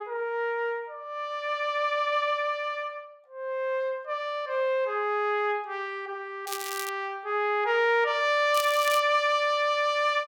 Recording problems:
crackling; at 6.5 s and at 8.5 s; loose cable, SNR 10 dB

